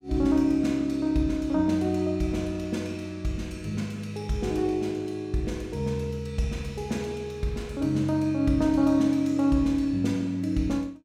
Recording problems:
none

